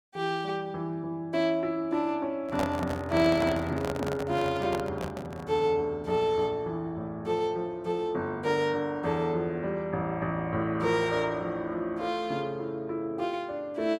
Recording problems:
handling noise; from 2.5 to 5.5 s; peak +2 dB vs average level

